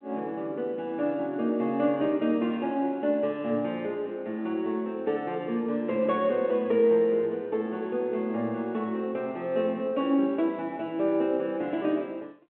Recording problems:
telephone audio; 190 Hz to 3.3 kHz, G.726

